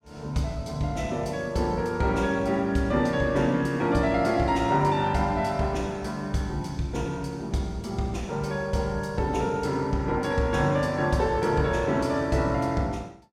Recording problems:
none

